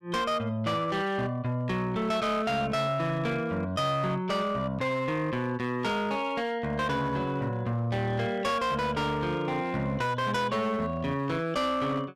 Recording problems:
distorted audio; hard clipping, signal-to-distortion ratio 11 dB

